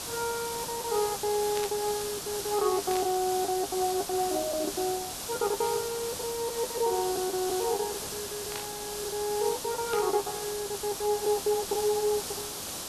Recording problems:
background hiss; SNR 4 dB
lost packets; 17% of the sound replaced, filled with the last packet
burst of static; 4 times, first at 1.5 s; peak -3 dB vs average level

